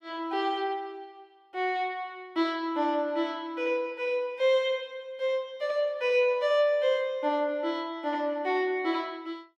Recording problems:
none

